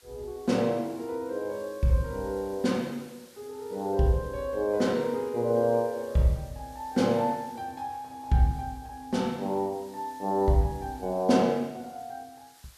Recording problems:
hiss; slope +1 dB per octave, SNR 26 dB

